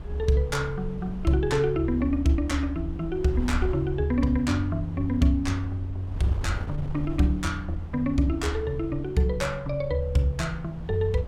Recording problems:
wind on the microphone; below 92 Hz, SNR 12 dB

